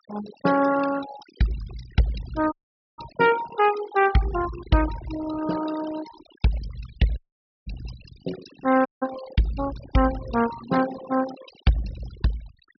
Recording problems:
treble missing; nothing above 5.5 kHz
denoising artefacts; signal-to-artefact ratio 12 dB
audio cutting out; at 2.5 s, at 7 s and at 9 s

